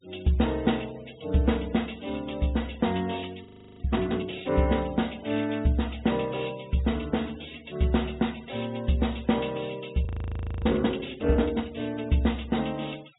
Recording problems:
treble missing; nothing above 4 kHz
noise reduction artefacts; signal-to-artefact ratio 22 dB
audio freezing; at 3.5 s and at 10 s for 0.5 s

